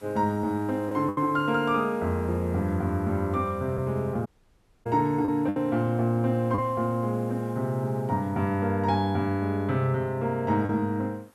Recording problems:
hiss; SNR 29 dB
lost packets; 3% of the sound replaced, filled with the last packet
dropout; at 4.5 s for 0.5 s

